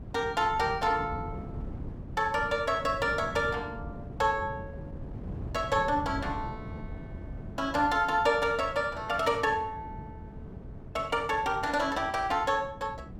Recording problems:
wind noise; below 220 Hz, SNR 13 dB

